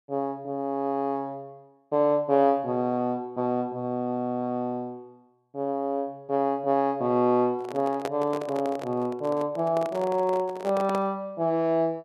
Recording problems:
handling noise; from 7.5 to 11 s; peak -1 dB vs average level

